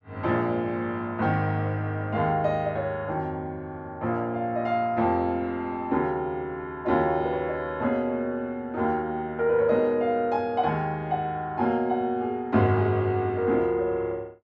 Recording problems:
none

